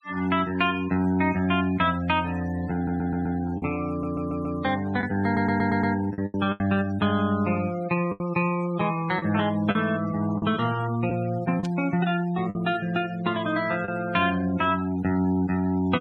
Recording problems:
denoising artefacts; signal-to-artefact ratio 19 dB
lost packets; 4% of the sound replaced, filled with the last packet
audio stuttering; at 2.5 s, at 4 s and at 5.5 s
static burst; at 12 s; peak -13 dB vs average level

